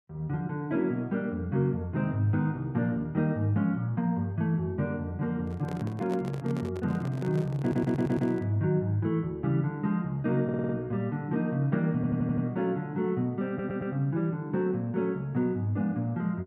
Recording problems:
microphone handling noise; from 5.5 to 8.5 s; peak -6 dB vs average level
audio stuttering; 4 times, first at 7.5 s

